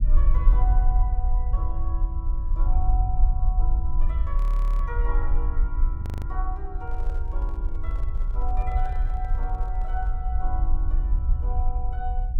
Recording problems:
rumble; below 50 Hz, SNR -12 dB
frozen audio; at 4.5 s and at 6 s
handling noise; from 7 to 10 s; peak -5 dB vs average level

